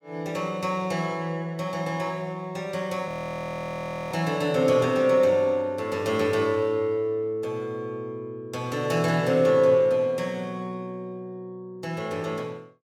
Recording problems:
audio freezing; at 3 s for 1 s

